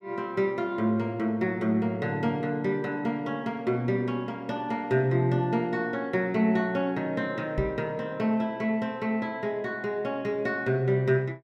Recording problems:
knock on the microphone; at 7.5 s; peak +2 dB vs average level

